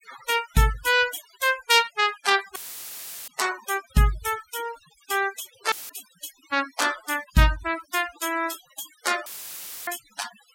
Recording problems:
denoising artefacts; signal-to-artefact ratio 14 dB
audio cutting out; at 2.5 s for 0.5 s, at 5.5 s and at 9.5 s for 0.5 s; filled with static

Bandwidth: 16.5 kHz